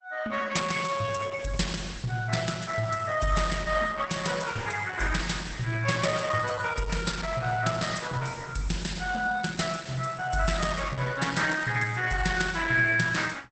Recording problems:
lossy codec; Opus, log-spectral distance 6 dB, nothing above 8.2 kHz

